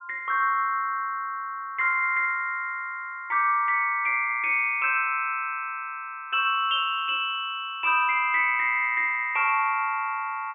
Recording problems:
treble missing; nothing above 3.7 kHz

